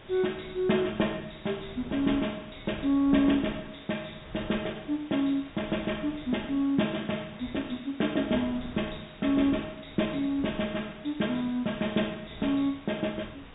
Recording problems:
treble cut off; nothing above 4 kHz
hiss; SNR 21 dB
wind on the microphone; below 370 Hz, SNR 19 dB

